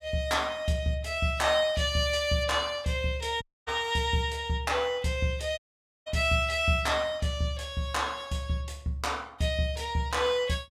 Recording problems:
audio cutting out; at 3.5 s and at 5.5 s

